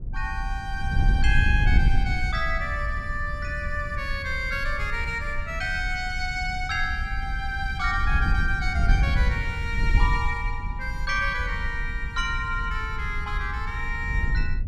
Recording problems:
wind on the microphone; below 74 Hz, SNR 1 dB

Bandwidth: 14 kHz